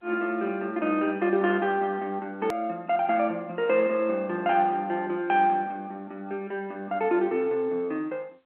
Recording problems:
phone line; 240 Hz to 3.1 kHz, G.711
hard cut with a click; at 2.5 s

